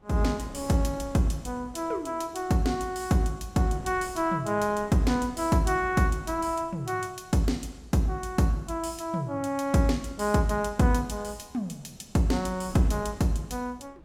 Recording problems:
wind noise; below 420 Hz, SNR 21 dB

